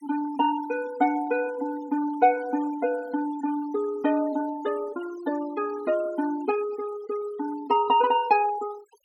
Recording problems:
noise reduction artefacts; signal-to-artefact ratio 18 dB

